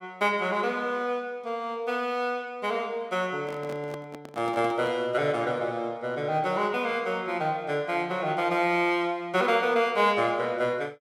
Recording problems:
handling noise; from 3.5 to 5 s; peak -9 dB vs average level

